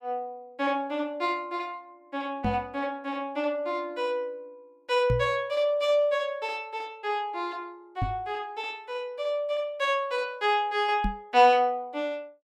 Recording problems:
knock on the microphone; 4 times, first at 2.5 s; peak +3 dB vs average level

